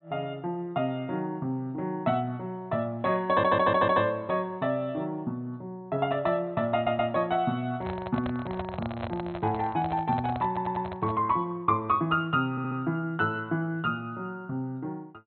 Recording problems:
treble cut off; nothing above 4.2 kHz
audio stuttering; 4 times, first at 3.5 s
handling noise; from 8 to 11 s; peak -2 dB vs average level

